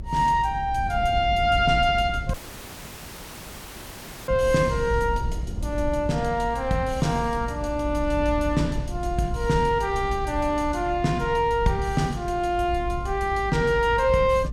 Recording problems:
low-frequency rumble; below 96 Hz, SNR 9 dB
audio cutting out; at 2.5 s for 2 s

